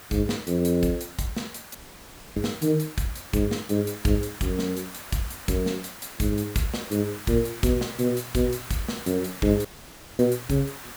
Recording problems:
background hiss; SNR 14 dB
audio cutting out; at 2 s for 0.5 s and at 9.5 s for 0.5 s

